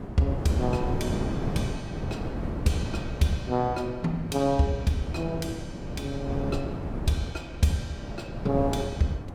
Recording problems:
wind on the microphone; below 330 Hz, SNR 4 dB

